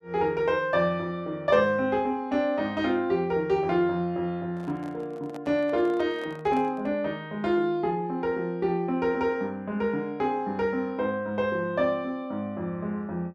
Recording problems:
microphone handling noise; from 4.5 to 7 s; peak -11 dB vs average level

